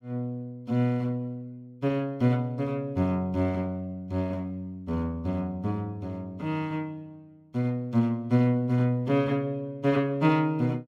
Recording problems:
none

